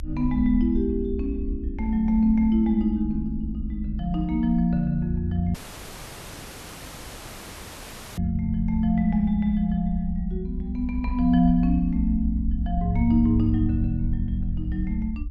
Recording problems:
low-frequency rumble; below 64 Hz, SNR 8 dB
dropout; at 5.5 s for 2.5 s

